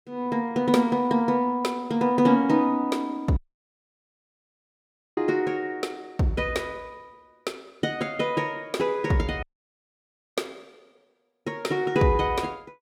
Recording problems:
audio cutting out; at 3.5 s for 2 s and at 9.5 s for 1 s

